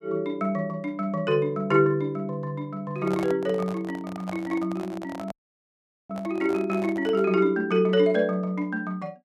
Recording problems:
microphone handling noise; from 3 to 7.5 s; peak -5 dB vs average level
audio cutting out; at 5.5 s for 1 s

